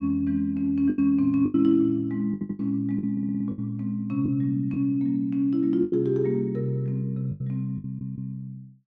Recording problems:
lost packets; 8% of the sound replaced, filled with the last packet
audio stuttering; at 2.5 s, at 3 s and at 8 s

